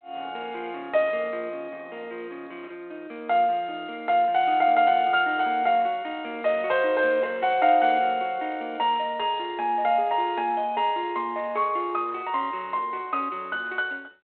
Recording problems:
phone line; 300 Hz to 3.7 kHz, G.726

